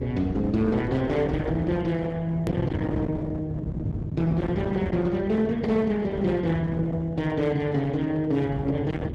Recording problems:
lossy compression; Opus, log-spectral distance 2 dB, nothing above 13.1 kHz
distorted audio; hard clipping, uneven, signal-to-distortion ratio 10 dB
mains hum; 50 Hz, harmonics up to 350 Hz, SNR 22 dB
rumble; below 200 Hz, SNR 6 dB
click at an edit; at 2.5 s

